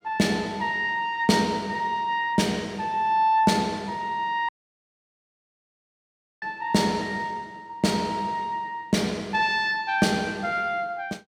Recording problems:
audio cutting out; at 4.5 s for 2 s

